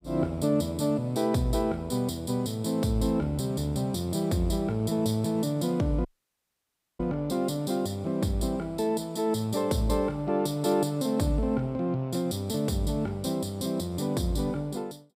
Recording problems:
dropout; at 6 s for 1 s

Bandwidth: 15.5 kHz